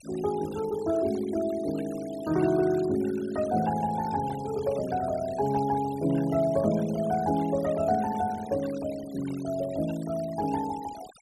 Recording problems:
denoising artefacts; signal-to-artefact ratio 19 dB

